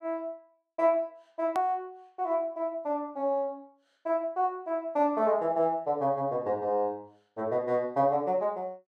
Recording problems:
edit click; at 1.5 s

